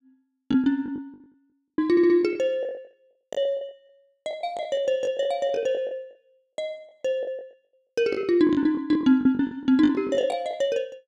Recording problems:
lost packets; 16% of the sound replaced, filled with the last packet
stutter; at 2 s

